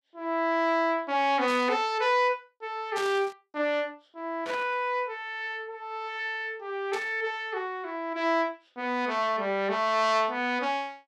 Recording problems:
static burst; 4 times, first at 1.5 s; peak -6 dB vs average level

